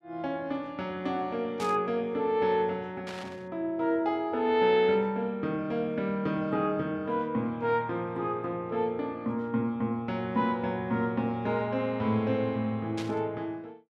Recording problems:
burst of static; at 1.5 s, at 3 s and at 13 s; peak -7 dB vs average level

